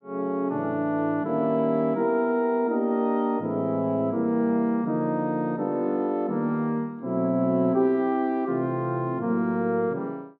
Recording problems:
none

